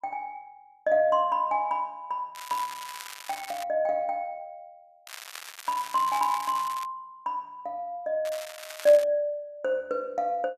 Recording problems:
crackle; from 2.5 to 3.5 s, from 5 to 7 s and at 8.5 s; loose cable, SNR 13 dB

